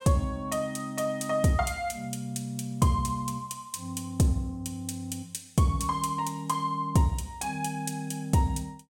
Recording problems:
none

